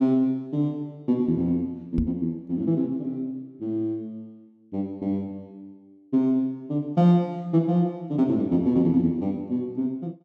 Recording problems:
microphone thump; at 2 s; peak +4 dB vs average level

